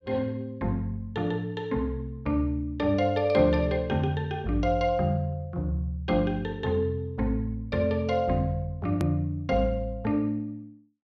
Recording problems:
click at an edit; at 9 s

